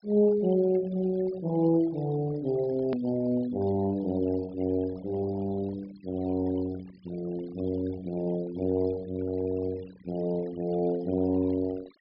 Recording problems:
low-pass filter; nothing above 5.5 kHz
noise reduction artefacts; signal-to-artefact ratio 20 dB
edit click; at 3 s

